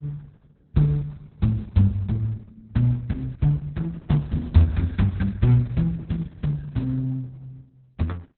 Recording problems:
lossy compression; Opus, then Opus, log-spectral distance 2 dB, nothing above 4 kHz

